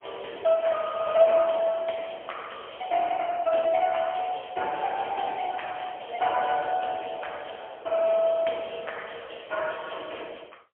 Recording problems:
phone line; 340 Hz to 3.3 kHz, AMR-NB, then MP3

